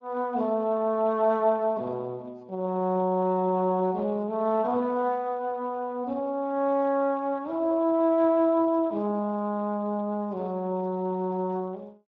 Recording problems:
codec artefacts; Speex, log-spectral distance 2 dB

